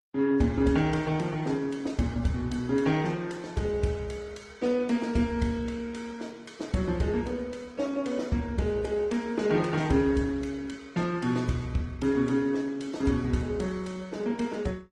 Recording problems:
lossy compression; MP3, then Opus, log-spectral distance 3 dB

